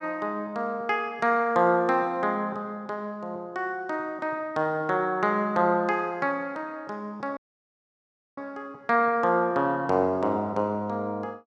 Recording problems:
dropout; at 7.5 s for 1 s

